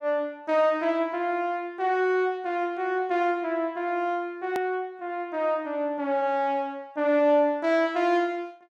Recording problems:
hard cut with a click; at 4.5 s

